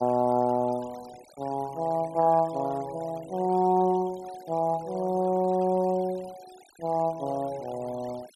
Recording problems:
denoising artefacts; signal-to-artefact ratio 24 dB

